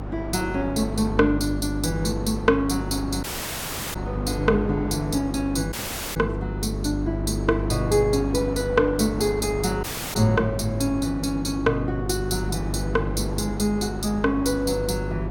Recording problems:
electrical hum; 50 Hz, harmonics up to 400 Hz, SNR 6 dB
wind noise; below 870 Hz, SNR 13 dB
dropout; at 3 s for 0.5 s, at 5.5 s and at 10 s

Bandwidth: 17 kHz